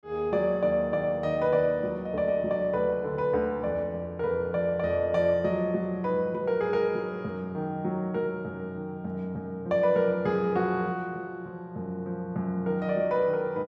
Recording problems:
none

